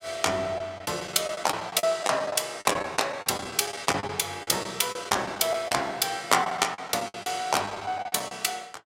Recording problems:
lost packets; 14% of the sound replaced, filled with the last packet

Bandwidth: 16 kHz